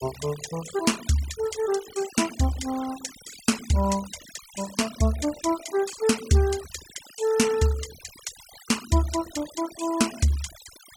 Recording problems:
denoising artefacts; signal-to-artefact ratio 14 dB

